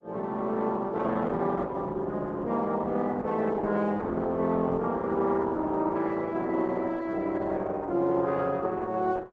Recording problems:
lossy compression; Opus, log-spectral distance 3 dB

